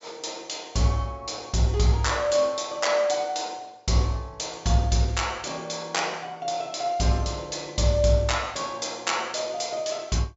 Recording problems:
treble missing; nothing above 8 kHz

